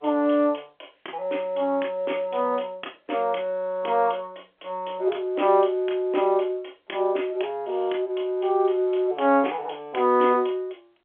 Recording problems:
telephone audio; 280 Hz to 3.4 kHz, G.711

